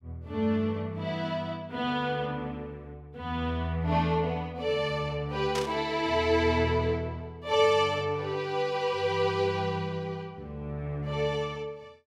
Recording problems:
burst of static; at 5.5 s; peak -2 dB vs average level

